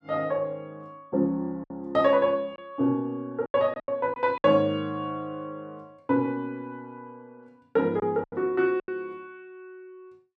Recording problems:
packet loss; 6% of the sound replaced, filled with silence

